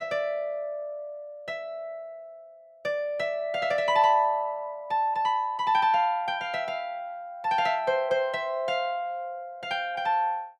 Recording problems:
none

